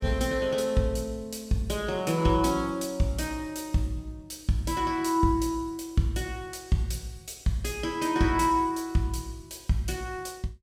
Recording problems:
none

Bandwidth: 16 kHz